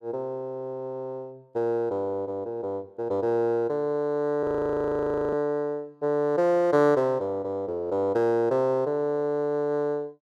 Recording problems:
frozen audio; at 4.5 s for 1 s

